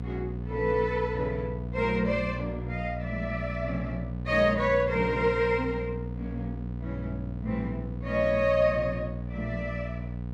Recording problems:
hum; 60 Hz, harmonics up to 720 Hz, SNR 6 dB

